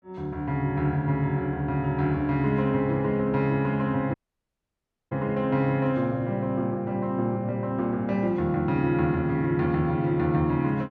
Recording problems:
dropout; at 4 s for 1 s

